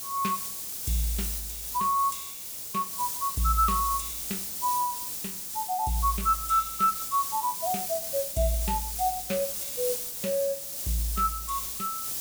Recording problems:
background hiss; SNR 3 dB

